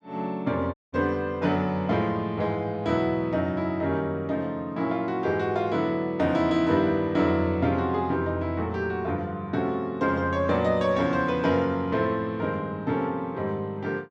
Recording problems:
dropout; at 0.5 s

